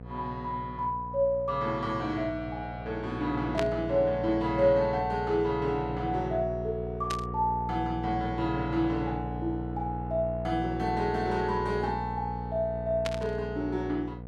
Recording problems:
electrical hum; 60 Hz, harmonics up to 960 Hz, SNR 8 dB
static burst; at 3.5 s, at 7 s and at 13 s; peak +1 dB vs average level

